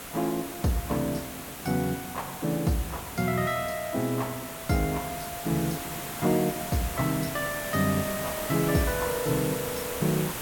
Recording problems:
background hiss; slope -3 dB per octave, SNR 6 dB

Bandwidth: 17 kHz